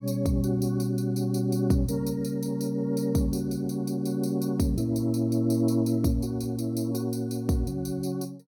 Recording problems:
none

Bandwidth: 18 kHz